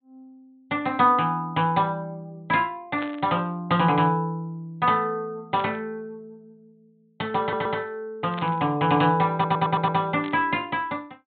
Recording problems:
treble cut off; nothing above 4 kHz
burst of static; 4 times, first at 3 s; peak -9 dB vs average level
audio stuttering; at 7.5 s and at 9.5 s

